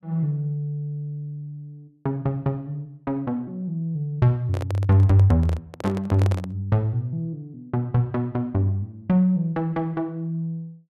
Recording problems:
microphone handling noise; from 4.5 to 6.5 s; peak -3 dB vs average level

